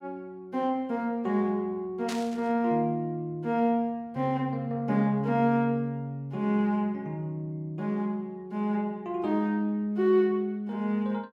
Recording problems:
burst of static; at 2 s; peak -5 dB vs average level

